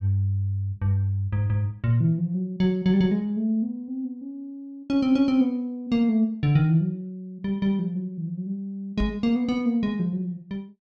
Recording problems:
microphone bump; at 9 s; peak 0 dB vs average level

